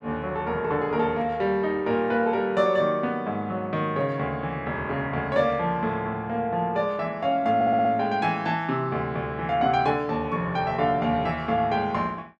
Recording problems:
stutter; at 7.5 s

